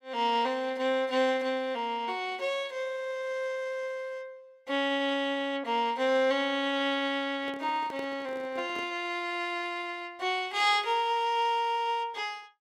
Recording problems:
microphone handling noise; from 7.5 to 9 s; peak -8 dB vs average level

